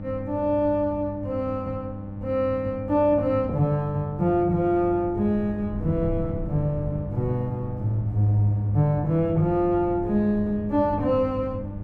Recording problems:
hum; 50 Hz, harmonics up to 900 Hz, SNR 12 dB
wind on the microphone; below 160 Hz, SNR 15 dB

